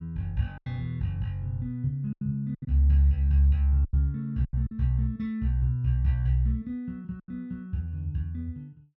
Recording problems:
packet loss; 6% of the sound replaced, filled with silence

